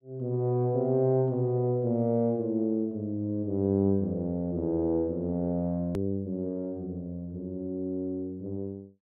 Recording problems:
edit click; at 6 s

